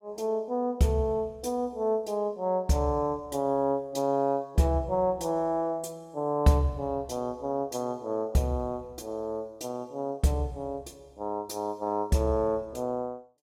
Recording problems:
none

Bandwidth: 16.5 kHz